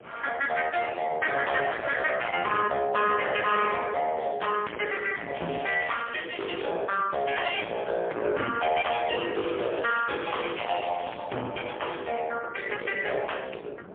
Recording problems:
phone line; 280 Hz to 3.1 kHz, AMR-NB, then MP3
distorted audio; soft clipping, signal-to-distortion ratio 6 dB
wind noise; below 1 kHz, SNR 18 dB
crackle; from 5.5 to 6.5 s and from 9.5 to 11 s; loose cable, SNR 13 dB

